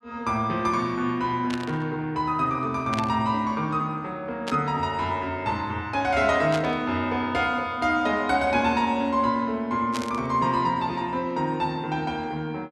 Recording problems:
burst of static; 5 times, first at 1.5 s; peak -3 dB vs average level

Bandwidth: 12.5 kHz